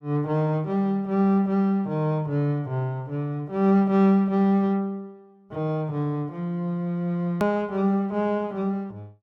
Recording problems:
click at an edit; at 7.5 s

